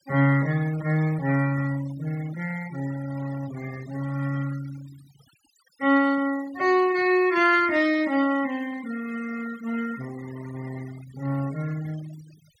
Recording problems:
denoising artefacts; signal-to-artefact ratio 19 dB

